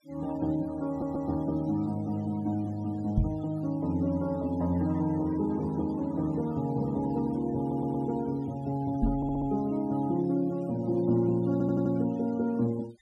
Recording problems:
noise reduction artefacts; signal-to-artefact ratio 23 dB
stutter; 4 times, first at 1 s
microphone thump; at 3 s and at 9 s; peak +6 dB vs average level

